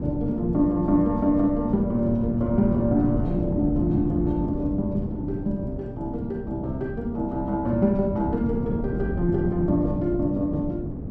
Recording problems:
wind noise; below 260 Hz, SNR 5 dB

